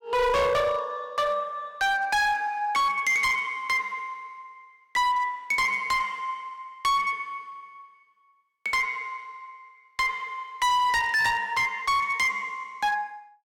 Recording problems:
distortion; hard clipping, signal-to-distortion ratio 7 dB

